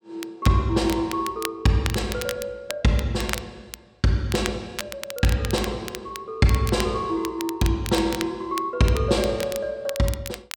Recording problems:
crackling; vinyl, SNR 11 dB

